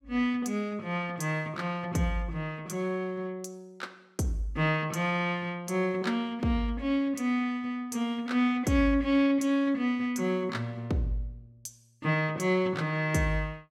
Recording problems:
none

